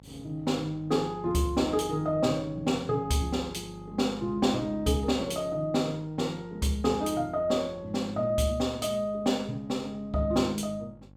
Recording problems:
electrical hum; 50 Hz, harmonics up to 850 Hz, SNR 21 dB

